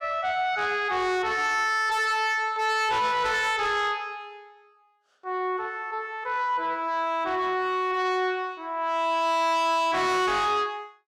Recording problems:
distorted audio; soft clipping, signal-to-distortion ratio 8 dB

